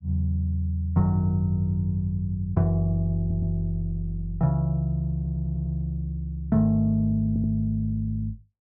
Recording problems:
stutter; at 3 s, at 5 s and at 7.5 s

